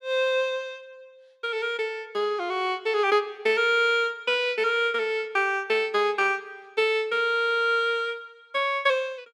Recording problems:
none

